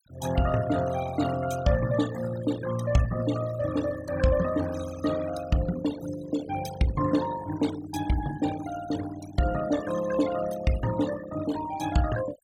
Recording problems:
noise reduction artefacts; signal-to-artefact ratio 12 dB

